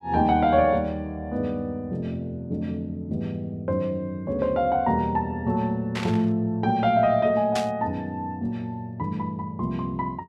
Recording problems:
burst of static; at 6 s and at 7.5 s; peak -2 dB vs average level

